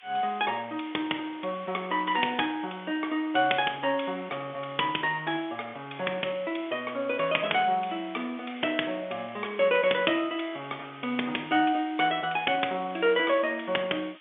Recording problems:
phone line; 260 Hz to 3.5 kHz, G.711
background hiss; SNR 24 dB

